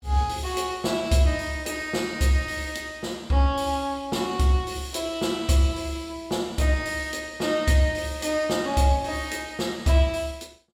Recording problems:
none

